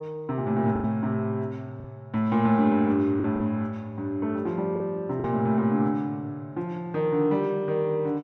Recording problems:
packet loss; 3% of the sound replaced, filled with the last packet

